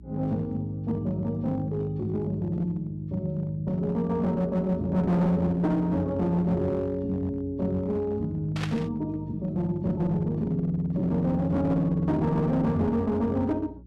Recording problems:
distortion; hard clipping, uneven, signal-to-distortion ratio 10 dB
hum; 60 Hz, harmonics up to 360 Hz, SNR 22 dB
burst of static; at 8.5 s; peak -3 dB vs average level

